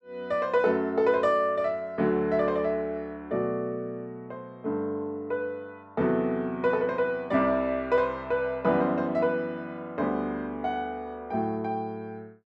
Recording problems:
none

